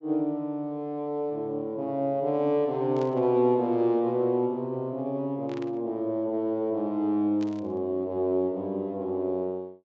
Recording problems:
treble cut off; nothing above 8 kHz
burst of static; at 3 s, at 5.5 s and at 7.5 s; peak -14 dB vs average level

